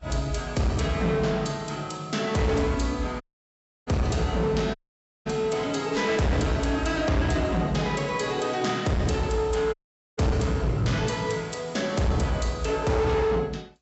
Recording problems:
treble missing; nothing above 7.8 kHz
lossy compression; Vorbis, log-spectral distance 4 dB
distorted audio; hard clipping, signal-to-distortion ratio 8 dB
dropout; at 3 s for 0.5 s, at 5 s for 0.5 s and at 9.5 s

